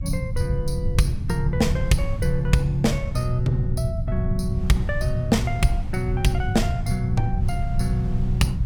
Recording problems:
rumble; below 120 Hz, SNR 2 dB
wind noise; below 720 Hz, SNR 22 dB

